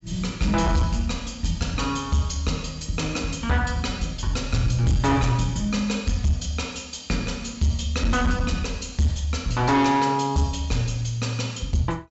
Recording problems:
low-pass filter; nothing above 7.6 kHz
distorted audio; soft clipping, signal-to-distortion ratio 11 dB

